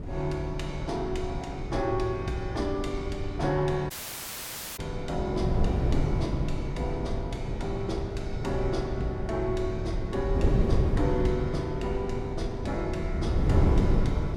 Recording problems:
wind noise; below 180 Hz, SNR -1 dB
audio cutting out; at 4 s for 1 s

